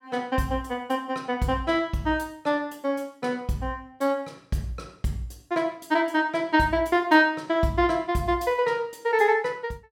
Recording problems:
none

